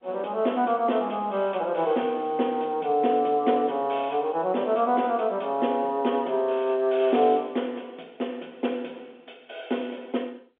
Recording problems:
telephone audio; 260 Hz to 3.6 kHz, G.711

